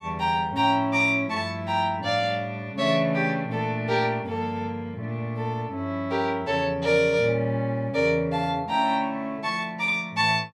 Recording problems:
none

